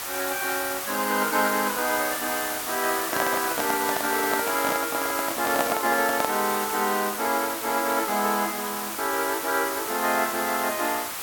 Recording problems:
background hiss; SNR 3 dB
microphone handling noise; from 3 to 6.5 s; peak +4 dB vs average level

